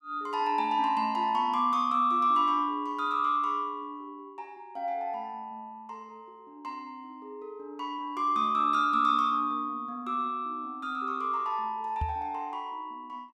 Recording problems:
knock on the microphone; at 12 s; peak -1 dB vs average level

